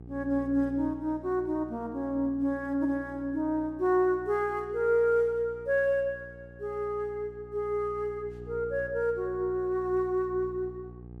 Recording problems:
hum; 60 Hz, harmonics up to 840 Hz, SNR 18 dB

